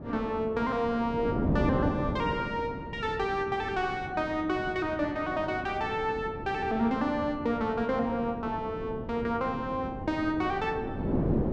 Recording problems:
wind on the microphone; below 380 Hz, SNR 6 dB

